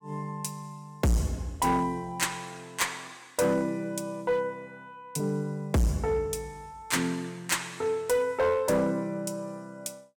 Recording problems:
distortion; hard clipping, uneven, signal-to-distortion ratio 8 dB

